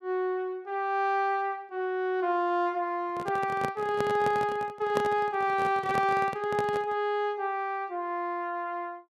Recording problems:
handling noise; from 3 to 7 s; peak +2 dB vs average level

